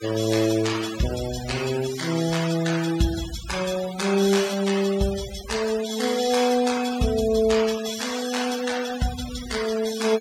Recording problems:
noise reduction artefacts; signal-to-artefact ratio 11 dB

